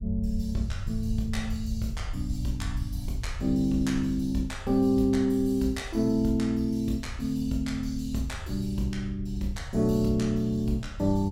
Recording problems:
low-frequency rumble; below 84 Hz, SNR 10 dB

